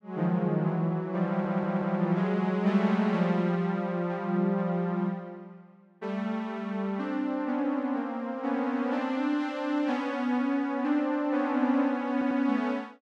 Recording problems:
stutter; at 1.5 s and at 12 s

